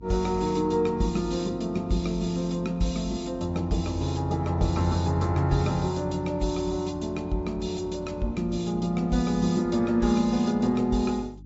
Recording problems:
low-pass filter; nothing above 7.3 kHz
lossy codec; MP3, log-spectral distance 2 dB
hum; 50 Hz, harmonics up to 300 Hz, SNR 21 dB

